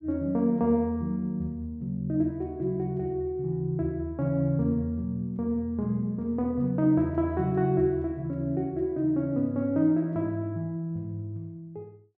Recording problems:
none

